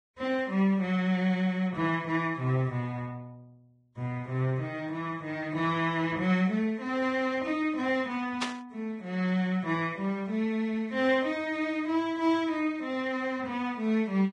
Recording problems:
lossy compression; Vorbis, log-spectral distance 2 dB
static burst; at 8.5 s; peak +2 dB vs average level

